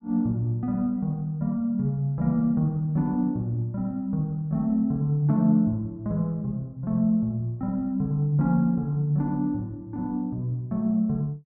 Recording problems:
none

